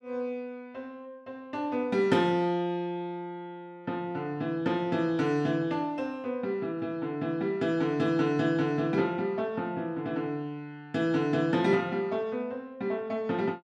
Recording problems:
none

